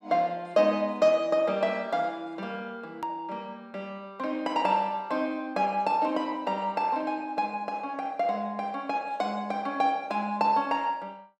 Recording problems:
click at an edit; at 3 s

